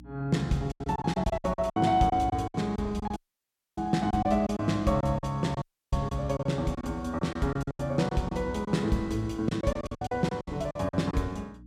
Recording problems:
hum; 60 Hz, harmonics up to 300 Hz, SNR 21 dB
packet loss; 13% of the sound replaced, filled with silence
dropout; at 3 s for 0.5 s and at 5.5 s

